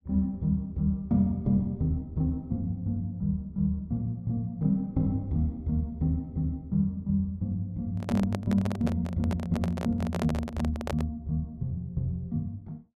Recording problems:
microphone handling noise; from 8 to 11 s; peak 0 dB vs average level

